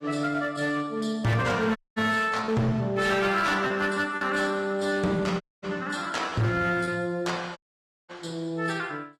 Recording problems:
lossy codec; AAC, log-spectral distance 3 dB, nothing above 15.1 kHz
distorted audio; hard clipping, signal-to-distortion ratio 10 dB
packet loss; 3% of the sound replaced, filled with repeated pitch periods
audio cutting out; at 2 s, at 5.5 s and at 7.5 s for 0.5 s

